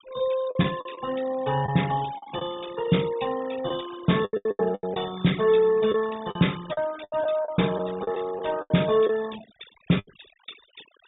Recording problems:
low-pass filter; nothing above 4 kHz
denoising artefacts; signal-to-artefact ratio 17 dB
packet loss; 10% of the sound replaced, filled with the last packet

